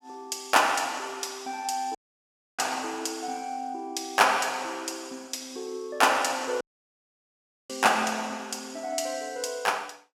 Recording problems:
dropout; at 2 s for 0.5 s and at 6.5 s for 1 s

